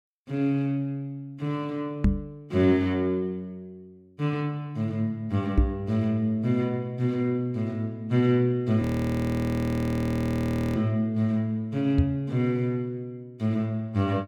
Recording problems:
microphone bump; at 2 s, at 5.5 s and at 12 s; peak +8 dB vs average level
audio freezing; at 9 s for 2 s

